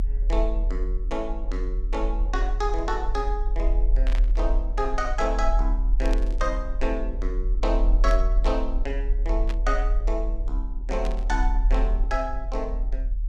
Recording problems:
rumble; below 40 Hz, strongest tone 38 Hz, SNR -3 dB
burst of static; 5 times, first at 4 s; peak -3 dB vs average level

